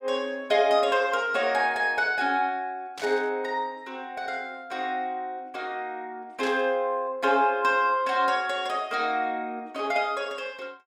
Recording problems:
static burst; at 3 s and at 6.5 s; peak -7 dB vs average level

